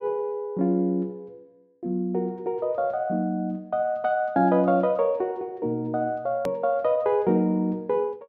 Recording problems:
click at an edit; at 6.5 s

